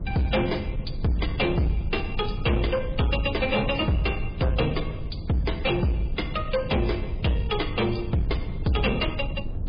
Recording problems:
codec artefacts; MP3, log-spectral distance 4 dB
distorted audio; soft clipping, signal-to-distortion ratio 7 dB
low-frequency rumble; below 120 Hz, SNR 8 dB

